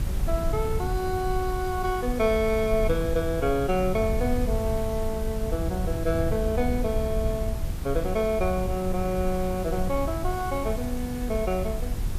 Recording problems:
background hiss; slope -2 dB per octave, SNR 15 dB
rumble; below 90 Hz, SNR 4 dB

